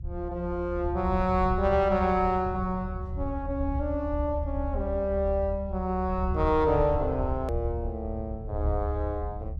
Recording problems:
low-frequency rumble; below 76 Hz, strongest tone 72 Hz, SNR 5 dB
edit click; at 7.5 s

